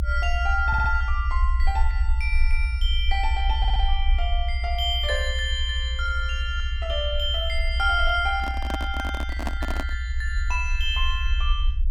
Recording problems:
low-frequency rumble; below 62 Hz, SNR 0 dB
audio stuttering; at 0.5 s and at 3.5 s
microphone handling noise; from 8.5 to 10 s; peak +1 dB vs average level

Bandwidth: 18 kHz